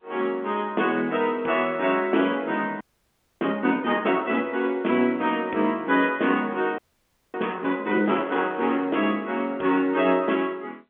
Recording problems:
telephone audio; 220 Hz to 3.4 kHz, G.711
audio freezing; at 3 s for 0.5 s and at 7 s for 0.5 s
crackle; at 8 s; loose cable, SNR 26 dB

